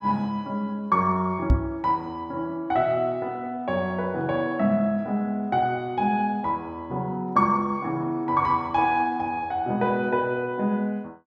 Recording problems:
knock on the microphone; at 1.5 s; peak +9 dB vs average level

